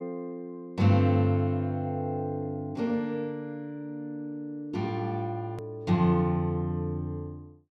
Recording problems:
click at an edit; at 5.5 s

